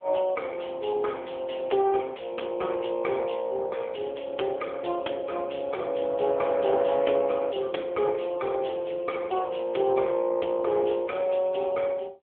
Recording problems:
phone line; 280 Hz to 3.4 kHz, AMR-NB

